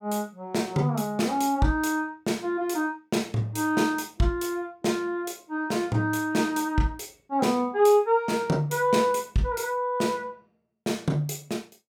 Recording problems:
none

